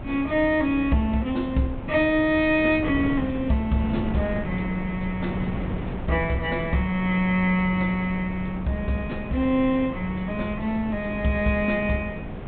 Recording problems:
treble cut off; nothing above 4 kHz
wind noise; below 340 Hz, SNR 9 dB

